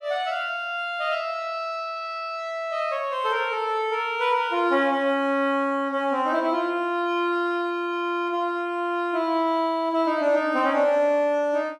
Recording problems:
none

